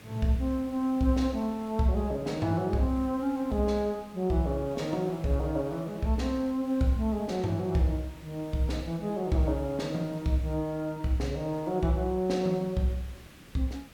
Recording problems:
background hiss; SNR 22 dB

